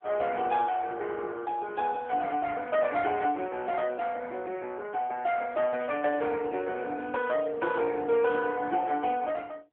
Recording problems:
telephone audio; 260 Hz to 3 kHz, AMR-NB

